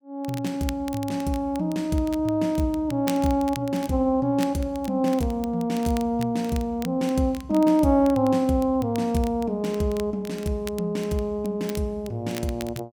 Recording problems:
crackling; vinyl, SNR 19 dB

